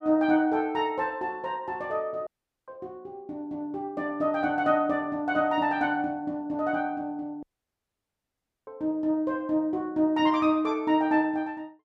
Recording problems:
audio cutting out; at 2.5 s and at 7.5 s for 1 s

